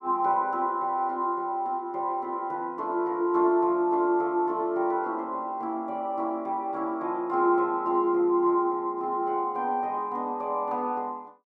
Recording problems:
none

